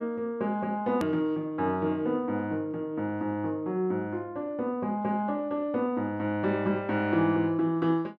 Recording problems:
click at an edit; at 1 s

